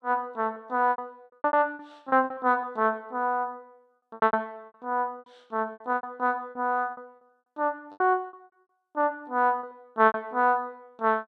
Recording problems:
packet loss; 14% of the sound replaced, filled with repeated pitch periods

